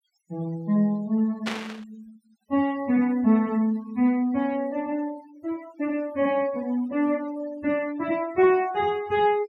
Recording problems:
denoising artefacts; signal-to-artefact ratio 24 dB
burst of static; at 1.5 s; peak -1 dB vs average level

